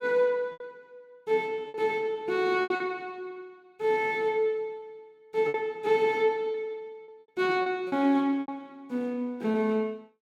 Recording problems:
lost packets; 7% of the sound replaced, filled with repeated pitch periods

